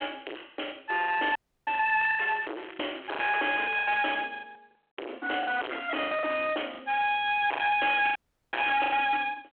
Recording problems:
telephone audio; 320 Hz to 3.3 kHz, G.726
distorted audio; hard clipping, signal-to-distortion ratio 4 dB
lost packets; 12% of the sound replaced, filled with the last packet
dropout; at 1.5 s and at 8 s
crackling; from 2 to 4 s and at 5.5 s; loose cable, SNR 19 dB

